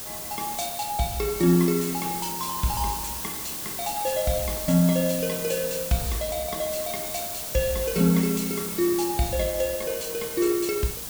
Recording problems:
hiss; SNR 5 dB

